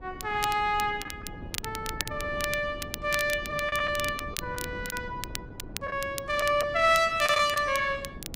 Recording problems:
wind noise; below 310 Hz, SNR 16 dB
crackling; vinyl, SNR 11 dB
packet loss; 4% of the sound replaced, filled with the last packet

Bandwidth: 15.5 kHz